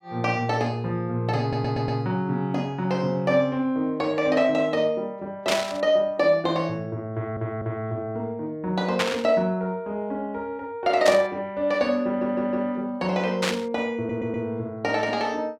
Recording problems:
audio stuttering; 4 times, first at 1.5 s
static burst; 4 times, first at 5.5 s; peak +5 dB vs average level

